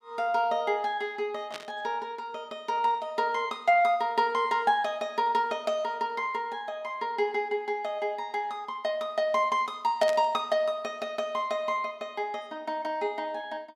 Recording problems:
static burst; at 1.5 s and at 10 s; peak -4 dB vs average level

